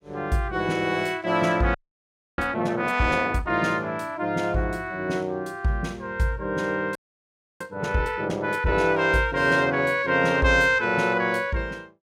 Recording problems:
audio freezing; at 2 s for 0.5 s and at 7 s for 0.5 s

